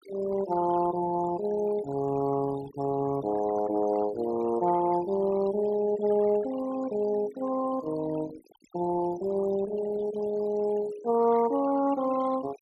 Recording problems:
noise reduction artefacts; signal-to-artefact ratio 17 dB

